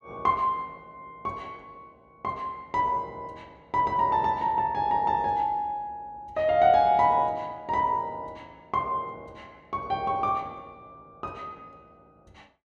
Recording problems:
none

